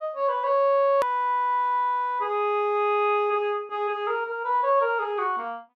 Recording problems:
click at an edit; at 1 s

